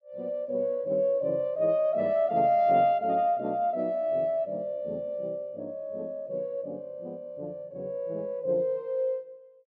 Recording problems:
none

